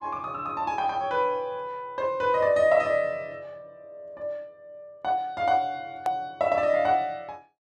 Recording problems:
hard cut with a click; at 6 s

